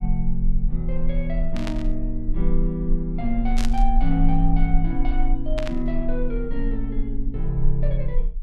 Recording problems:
low-frequency rumble; below 32 Hz, strongest tone 20 Hz, SNR 1 dB
burst of static; at 1.5 s, at 3.5 s and at 5.5 s; peak -1 dB vs average level

